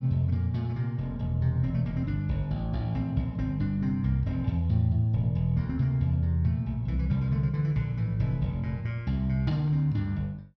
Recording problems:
none

